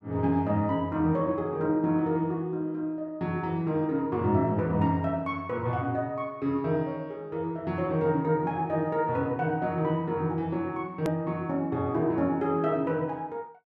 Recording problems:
edit click; at 11 s

